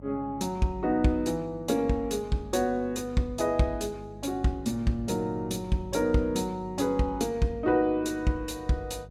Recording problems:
mains hum; 50 Hz, harmonics up to 600 Hz, SNR 18 dB

